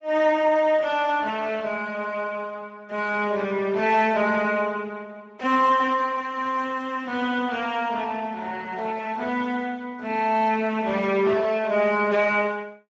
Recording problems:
codec artefacts; Speex, log-spectral distance 3 dB

